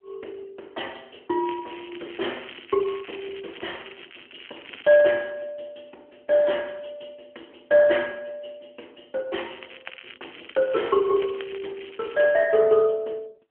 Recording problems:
phone line; 260 Hz to 3.2 kHz, AMR-NB
crackle; from 1.5 to 5 s and from 9.5 to 12 s; loose cable, SNR 20 dB

